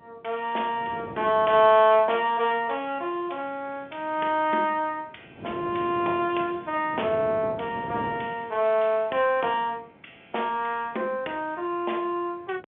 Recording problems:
telephone audio; 260 Hz to 3.4 kHz, G.711
wind noise; below 530 Hz, SNR 17 dB

